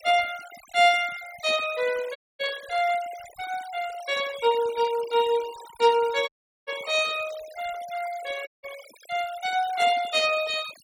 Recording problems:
noise reduction artefacts; signal-to-artefact ratio 16 dB
audio cutting out; at 2 s, at 6.5 s and at 8.5 s

